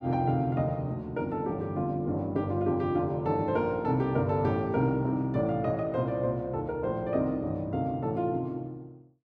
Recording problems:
none

